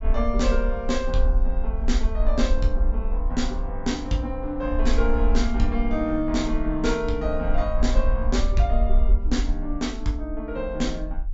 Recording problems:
low-pass filter; nothing above 8 kHz
low-frequency rumble; below 48 Hz, SNR 0 dB

